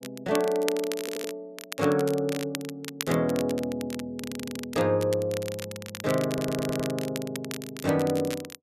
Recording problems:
crackle; vinyl, SNR 10 dB
audio stuttering; at 1 s, at 4 s and at 6.5 s

